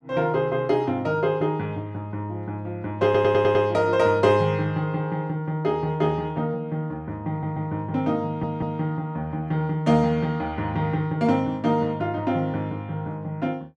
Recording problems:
stutter; at 3 s, at 7.5 s and at 8 s

